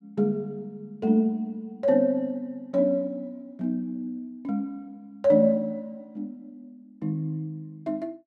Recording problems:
none

